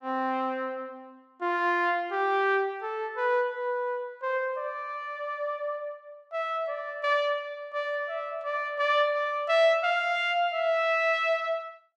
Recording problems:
none

